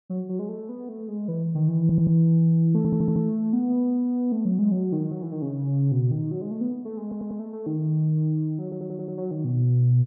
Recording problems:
audio stuttering; 4 times, first at 2 s

